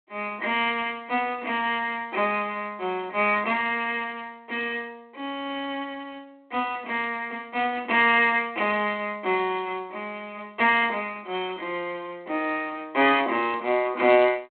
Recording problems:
phone line; 240 Hz to 3.7 kHz, G.726

